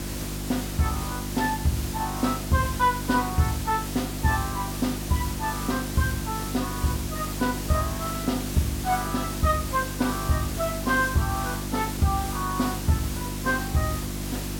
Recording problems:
electrical hum; 50 Hz, harmonics up to 350 Hz, SNR 6 dB
background hiss; slope -2 dB per octave, SNR 7 dB

